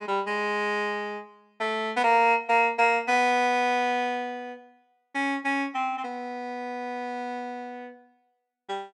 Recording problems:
none

